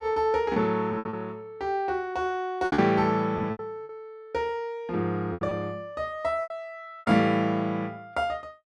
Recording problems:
lost packets; 8% of the sound replaced, filled with repeated pitch periods

